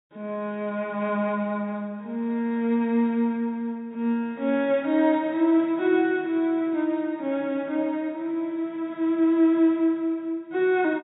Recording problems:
low-pass filter; nothing above 4 kHz

